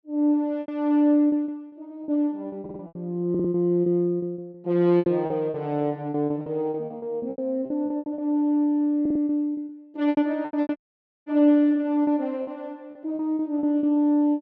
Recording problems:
lost packets; 15% of the sound replaced, filled with repeated pitch periods
audio stuttering; at 2.5 s, at 3.5 s and at 9 s
dropout; at 11 s for 0.5 s

